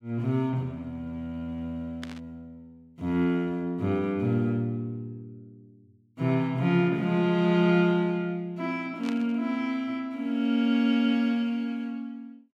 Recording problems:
burst of static; at 2 s and at 9 s; peak -9 dB vs average level

